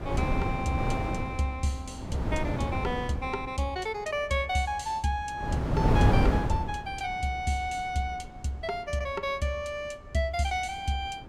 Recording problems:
wind on the microphone; below 310 Hz, SNR -1 dB

